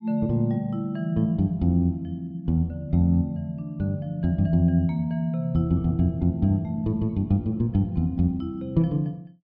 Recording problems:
none

